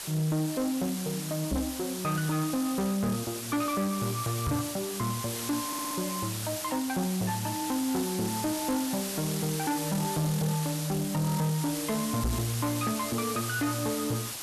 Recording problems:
distortion; soft clipping, signal-to-distortion ratio 11 dB
background hiss; slope 0 dB per octave, SNR 4 dB
microphone bump; at 1.5 s, at 4.5 s and at 12 s; peak +4 dB vs average level
audio stuttering; at 5.5 s

